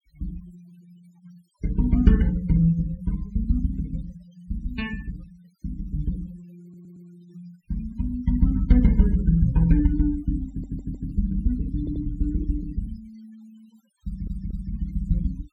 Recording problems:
denoising artefacts; signal-to-artefact ratio 24 dB
audio stuttering; 4 times, first at 6.5 s

